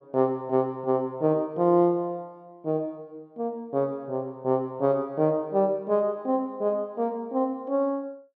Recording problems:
none

